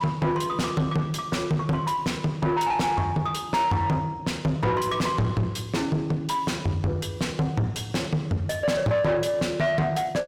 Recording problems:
distorted audio; soft clipping, signal-to-distortion ratio 6 dB

